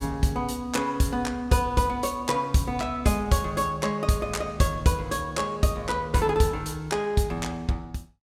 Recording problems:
none

